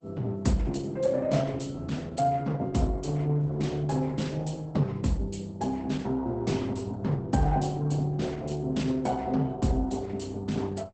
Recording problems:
codec artefacts; Opus, log-spectral distance 3 dB, nothing above 8.2 kHz

